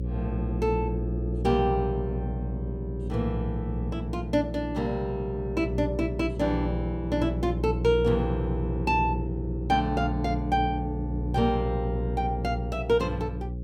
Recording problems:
hum; 60 Hz, harmonics up to 540 Hz, SNR 3 dB

